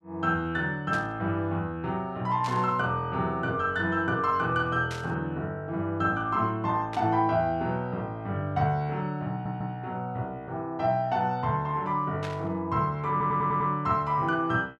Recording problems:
burst of static; 5 times, first at 1 s; peak -7 dB vs average level
stutter; at 9.5 s and at 13 s

